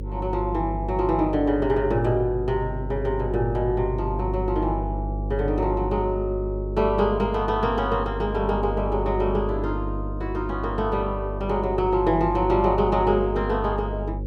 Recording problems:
hum; 50 Hz, harmonics up to 550 Hz, SNR 6 dB

